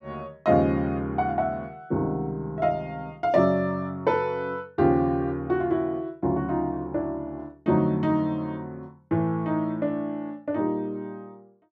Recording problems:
none

